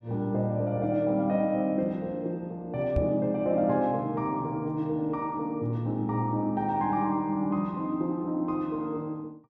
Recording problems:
microphone bump; at 3 s; peak +3 dB vs average level

